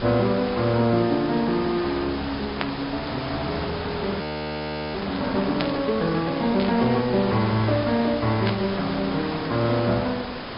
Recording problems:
low-pass filter; nothing above 5.2 kHz
lossy compression; MP3, log-spectral distance 7 dB
distorted audio; soft clipping, signal-to-distortion ratio 1 dB
hiss; slope -6 dB per octave, SNR 7 dB
burst of static; 4 times, first at 2.5 s; peak -2 dB vs average level
audio freezing; at 4 s for 0.5 s

